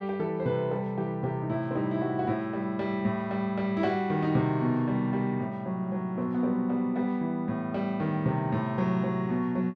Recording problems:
none

